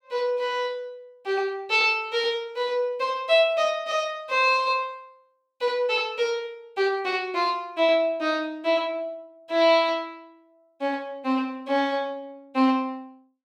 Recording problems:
none

